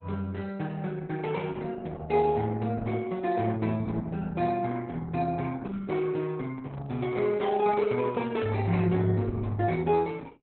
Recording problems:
lossy codec; Opus, log-spectral distance 3 dB, nothing above 4 kHz
microphone handling noise; from 6.5 to 9 s; peak -5 dB vs average level

